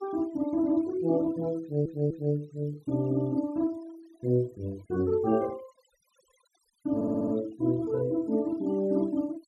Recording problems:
denoising artefacts; signal-to-artefact ratio 24 dB
stutter; at 1.5 s and at 7 s

